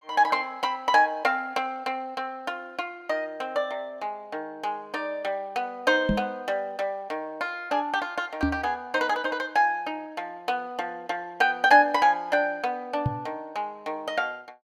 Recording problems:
microphone bump; at 6 s, at 8.5 s and at 13 s; peak +5 dB vs average level

